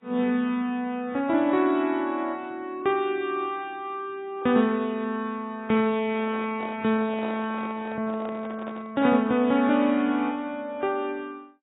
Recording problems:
codec artefacts; AAC, log-spectral distance 2 dB, nothing above 3.8 kHz
handling noise; from 6 to 9 s; peak -7 dB vs average level

